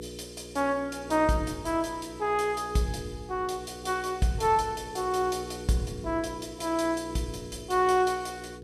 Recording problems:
electrical hum; 60 Hz, harmonics up to 480 Hz, SNR 14 dB

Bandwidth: 15 kHz